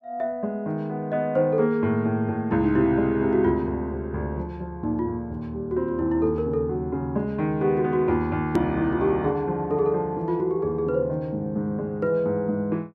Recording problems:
click at an edit; at 8.5 s

